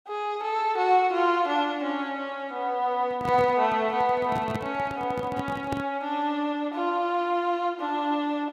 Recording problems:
handling noise; from 3 to 6 s; peak -1 dB vs average level

